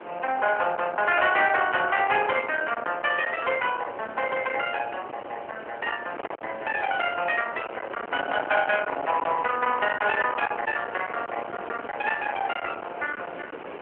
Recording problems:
phone line; 370 Hz to 3.1 kHz, AMR-NB
distortion; hard clipping, uneven, signal-to-distortion ratio 10 dB
wind on the microphone; below 1.8 kHz, SNR 10 dB

